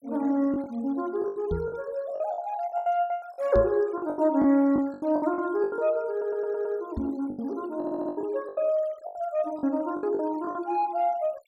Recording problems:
denoising artefacts; signal-to-artefact ratio 28 dB
lost packets; 15% of the sound replaced, filled with the last packet
microphone thump; at 1.5 s, at 3.5 s and at 7 s; peak +1 dB vs average level
audio stuttering; at 6 s and at 8 s

